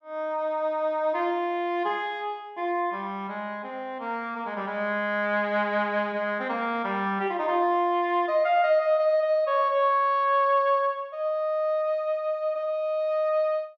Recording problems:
none

